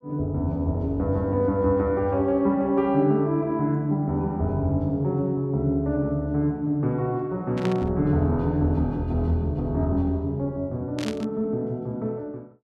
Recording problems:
burst of static; at 7.5 s and at 11 s; peak -6 dB vs average level

